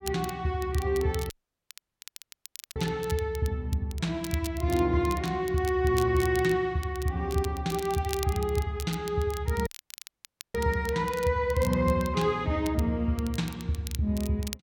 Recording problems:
crackle; vinyl, SNR 16 dB
dropout; at 1.5 s for 1.5 s and at 9.5 s for 1 s

